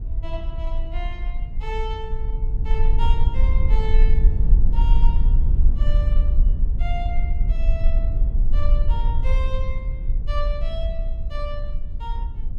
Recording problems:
low-frequency rumble; below 48 Hz, SNR -12 dB

